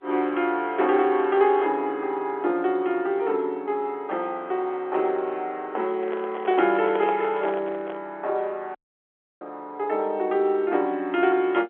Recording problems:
phone line; 260 Hz to 3.6 kHz, G.711
handling noise; from 6 to 8 s; peak -2 dB vs average level
audio cutting out; at 9 s for 0.5 s

